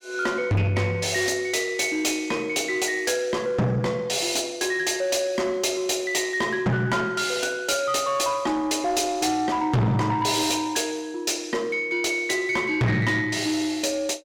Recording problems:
distorted audio; soft clipping, signal-to-distortion ratio 8 dB

